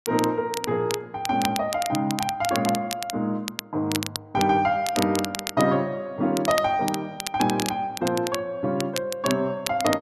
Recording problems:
crackle; vinyl, SNR 8 dB

